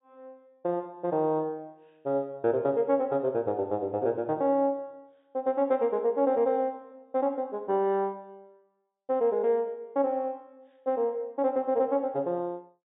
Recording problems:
treble cut off; nothing above 4 kHz

